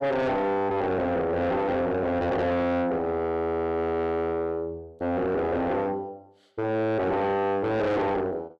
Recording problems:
distortion; soft clipping, signal-to-distortion ratio 6 dB

